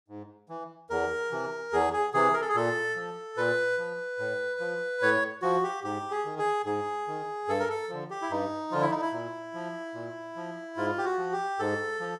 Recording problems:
none

